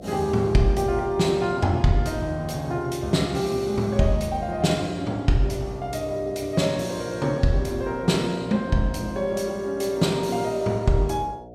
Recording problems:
hum; 60 Hz, harmonics up to 720 Hz, SNR 18 dB

